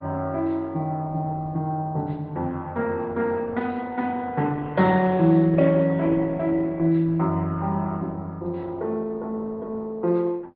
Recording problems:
treble cut off; nothing above 5.1 kHz
lossy compression; Opus, log-spectral distance 2 dB

